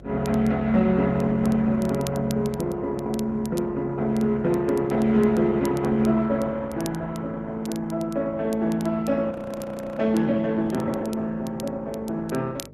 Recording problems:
lossy codec; Opus, log-spectral distance 2 dB, nothing above 13.1 kHz
electrical hum; 50 Hz, harmonics up to 600 Hz, SNR 20 dB
crackle; vinyl, SNR 21 dB
audio freezing; at 9.5 s for 0.5 s

